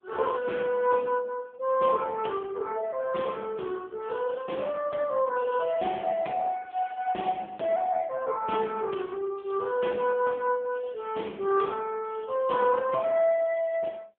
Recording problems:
phone line; 240 Hz to 2.8 kHz, AMR-NB

